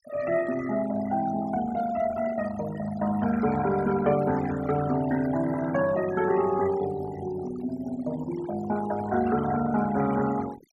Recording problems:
denoising artefacts; signal-to-artefact ratio 14 dB

